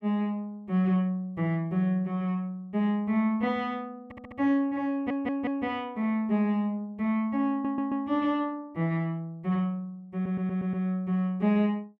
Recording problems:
audio stuttering; 4 times, first at 4 s

